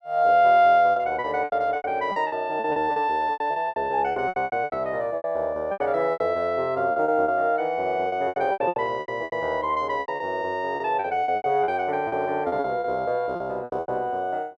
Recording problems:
packet loss; 17% of the sound replaced, filled with repeated pitch periods

